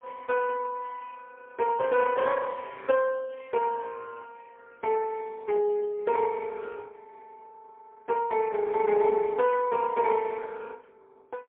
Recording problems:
phone line; 130 Hz to 2.2 kHz, AMR-NB, then MP3

